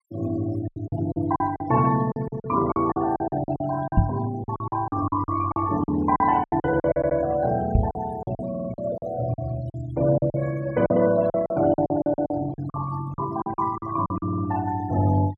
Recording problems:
denoising artefacts; signal-to-artefact ratio 19 dB
lost packets; 15% of the sound replaced, filled with silence
knock on the microphone; at 4 s and at 8 s; peak +9 dB vs average level
stutter; at 7 s, at 8.5 s and at 14 s

